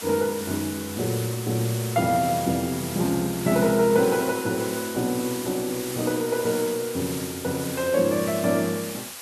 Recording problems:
hiss; slope 0 dB per octave, SNR 9 dB

